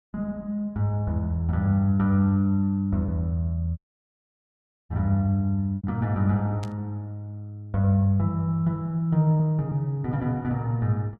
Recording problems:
packet loss; 2% of the sound replaced, filled with repeated pitch periods
audio cutting out; at 4 s for 1 s
static burst; at 6.5 s; peak -13 dB vs average level

